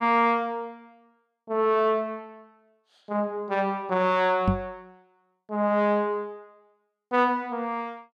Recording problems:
knock on the microphone; at 4.5 s; peak +5 dB vs average level

